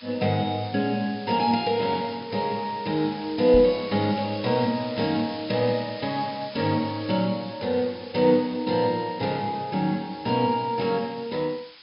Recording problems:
low-pass filter; nothing above 5.5 kHz
hiss; SNR 17 dB
knock on the microphone; at 3.5 s; peak -3 dB vs average level

